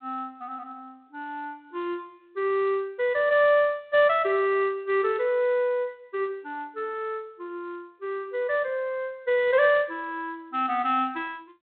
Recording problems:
telephone audio; 300 Hz to 3.9 kHz, G.726

